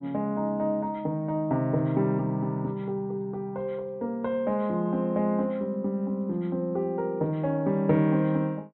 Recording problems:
treble cut off; nothing above 4 kHz

